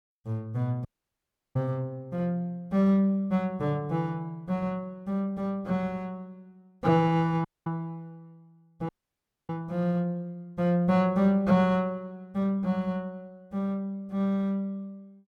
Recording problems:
audio cutting out; at 1 s for 0.5 s, at 7.5 s and at 9 s for 0.5 s

